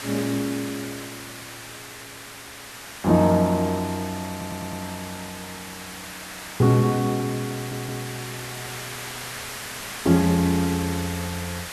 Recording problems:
hiss; SNR 11 dB
stutter; at 4.5 s and at 7.5 s

